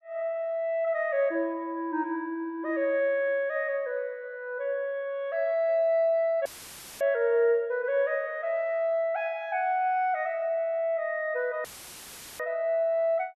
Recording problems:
audio cutting out; at 6.5 s for 0.5 s and at 12 s for 0.5 s; filled with static

